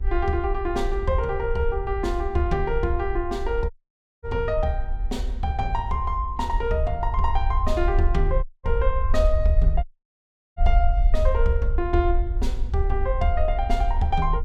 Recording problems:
hum; 60 Hz, harmonics up to 1.8 kHz, SNR 24 dB
rumble; below 54 Hz, SNR 1 dB
audio cutting out; at 3.5 s for 0.5 s, at 8.5 s and at 10 s for 0.5 s

